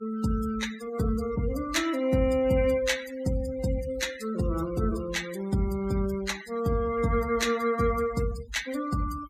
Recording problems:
denoising artefacts; signal-to-artefact ratio 14 dB

